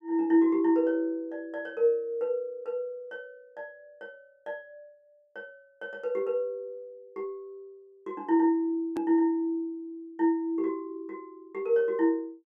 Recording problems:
click at an edit; at 9 s

